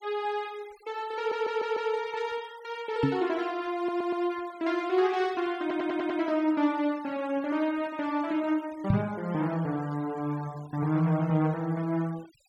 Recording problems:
noise reduction artefacts; signal-to-artefact ratio 22 dB
audio stuttering; at 1 s, at 4 s and at 5.5 s
microphone bump; at 3 s and at 9 s; peak +7 dB vs average level

